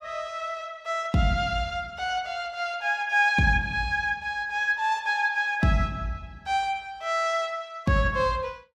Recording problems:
none

